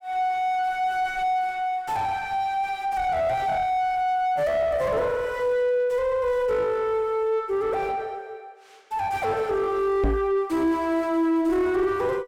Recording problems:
distortion; soft clipping, signal-to-distortion ratio 9 dB
microphone bump; at 10 s; peak +6 dB vs average level

